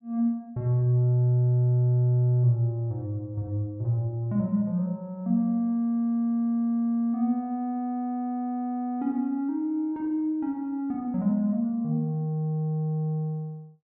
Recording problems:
none

